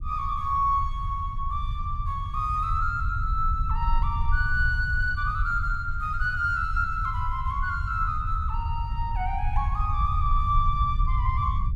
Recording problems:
rumble; below 78 Hz, SNR 2 dB

